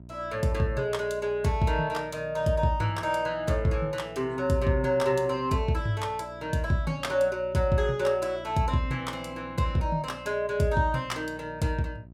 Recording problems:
hum; 60 Hz, harmonics up to 720 Hz, SNR 20 dB

